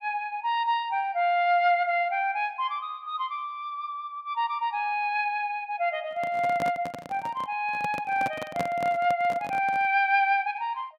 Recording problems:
microphone handling noise; from 6 to 10 s; peak -1 dB vs average level

